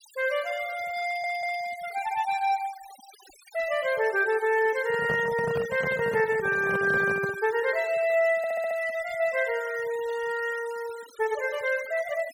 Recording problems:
denoising artefacts; signal-to-artefact ratio 18 dB
audio stuttering; at 1 s and at 8.5 s
handling noise; from 5 to 7.5 s; peak -3 dB vs average level

